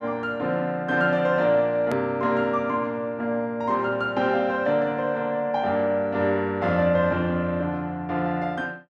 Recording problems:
click at an edit; at 2 s

